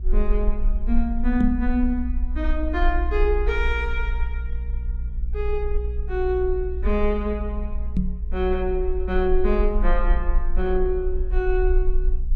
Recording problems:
hum; 60 Hz, harmonics up to 480 Hz, SNR 18 dB
rumble; below 56 Hz, strongest tone 20 Hz, SNR 1 dB
microphone thump; at 1.5 s and at 8 s; peak +5 dB vs average level

